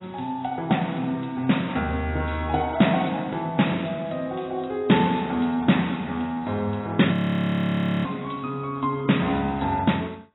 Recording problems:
codec artefacts; AAC, log-spectral distance 8 dB, nothing above 3.9 kHz
frozen audio; at 7 s for 1 s

